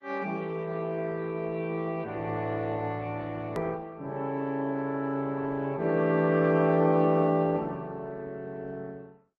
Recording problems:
lossy compression; Opus, then MP3, log-spectral distance 3 dB, nothing above 13.1 kHz
edit click; at 3.5 s

